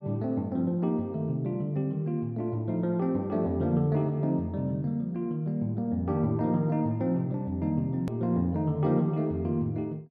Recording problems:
edit click; at 8 s

